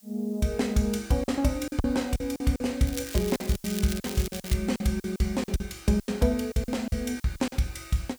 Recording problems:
background hiss; SNR 25 dB
lost packets; 12% of the sound replaced, filled with silence
crackle; from 3 to 4.5 s; loose cable, SNR 10 dB

